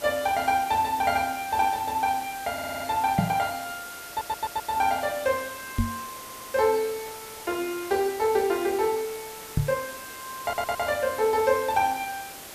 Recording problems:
background hiss; slope -2 dB per octave, SNR 13 dB
audio stuttering; 4 times, first at 2.5 s
microphone bump; at 3 s, at 6 s and at 9.5 s; peak +6 dB vs average level

